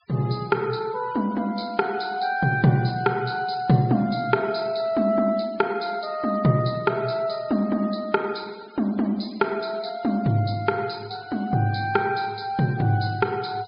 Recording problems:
treble cut off; nothing above 5 kHz
noise reduction artefacts; signal-to-artefact ratio 25 dB

